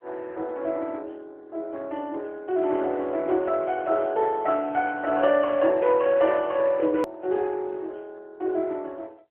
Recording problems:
phone line; 300 Hz to 3.3 kHz, AMR-NB
hard cut with a click; at 7 s

